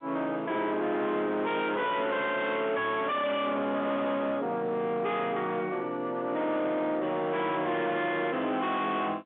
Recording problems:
phone line; 150 Hz to 3.6 kHz, G.711
distorted audio; soft clipping, signal-to-distortion ratio 5 dB

